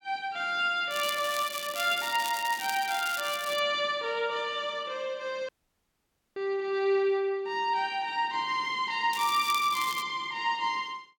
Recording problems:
crackling; from 1 to 3.5 s and at 9 s; loose cable, SNR 10 dB
dropout; at 5.5 s for 1 s

